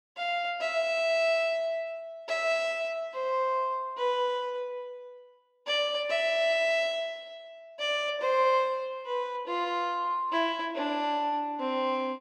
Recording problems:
none

